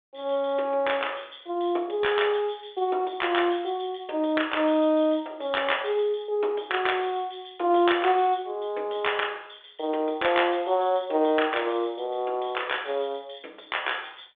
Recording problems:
telephone audio; 280 Hz to 3.6 kHz, G.726

